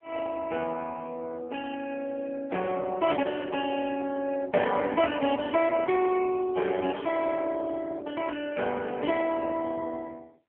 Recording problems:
phone line; 320 Hz to 3.2 kHz, AMR-NB

